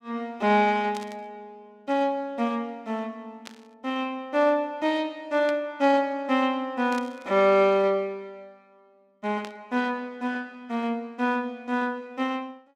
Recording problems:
static burst; 5 times, first at 1 s; peak -10 dB vs average level

